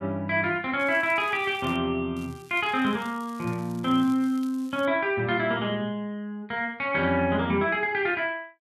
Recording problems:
crackling; at 1 s and from 2 to 5 s; loose cable, SNR 26 dB

